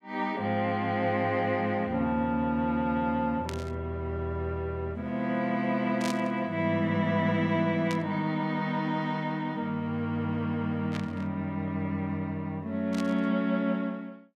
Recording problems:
burst of static; 5 times, first at 3.5 s; peak -4 dB vs average level

